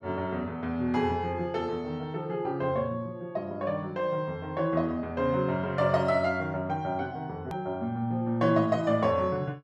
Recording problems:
edit click; at 7.5 s

